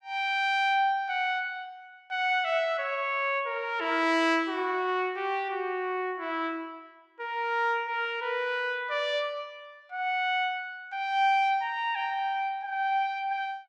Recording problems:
none

